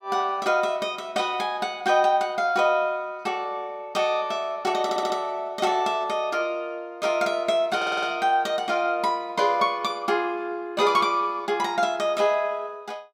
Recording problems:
stutter; at 5 s and at 8 s

